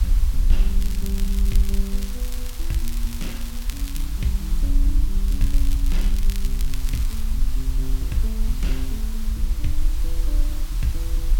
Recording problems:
hum; 60 Hz, harmonics up to 840 Hz, SNR 28 dB
background hiss; SNR 7 dB
low-frequency rumble; below 44 Hz, SNR -7 dB
crackling; from 1 to 4 s and from 5.5 to 7 s; loose cable, SNR 7 dB

